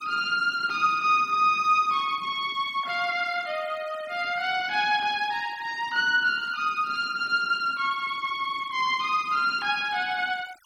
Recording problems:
denoising artefacts; signal-to-artefact ratio 24 dB

